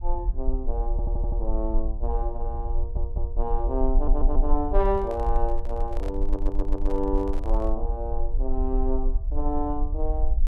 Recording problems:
rumble; below 42 Hz, strongest tone 22 Hz, SNR -2 dB
audio stuttering; 4 times, first at 1 s
handling noise; from 4.5 to 8 s; peak -7 dB vs average level

